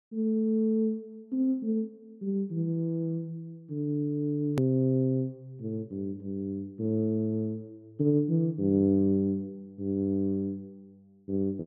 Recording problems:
hard cut with a click; at 4.5 s

